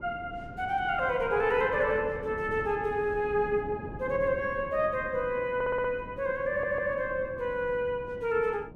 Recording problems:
wind on the microphone; below 360 Hz, SNR 15 dB
stutter; at 5.5 s and at 6.5 s

